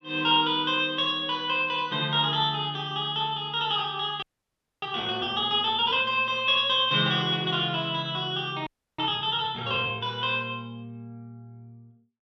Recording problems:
frozen audio; at 4 s for 0.5 s and at 8.5 s

